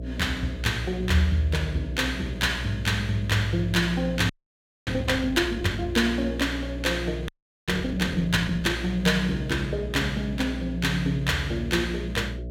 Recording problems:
electrical hum; 60 Hz, harmonics up to 660 Hz, SNR 9 dB
frozen audio; at 4.5 s for 0.5 s and at 7.5 s

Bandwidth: 16.5 kHz